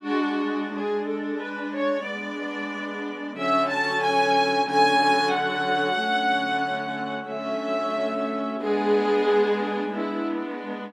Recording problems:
none

